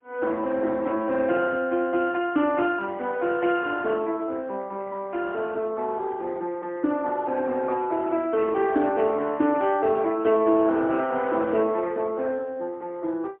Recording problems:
phone line; 260 Hz to 3.2 kHz, AMR-NB, then MP3

